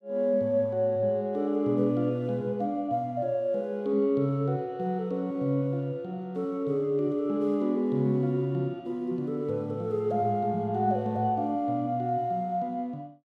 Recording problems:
none

